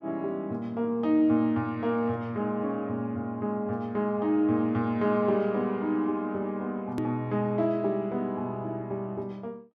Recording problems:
hard cut with a click; at 7 s

